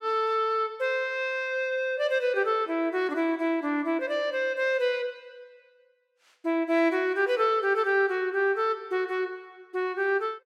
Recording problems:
none

